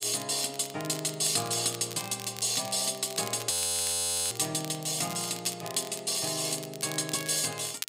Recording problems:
crackling; vinyl, SNR 13 dB
frozen audio; at 3.5 s for 1 s

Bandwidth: 15.5 kHz